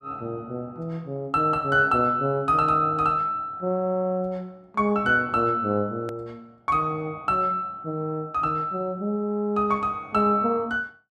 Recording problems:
edit click; at 6 s

